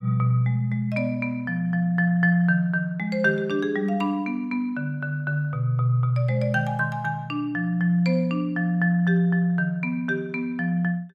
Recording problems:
none

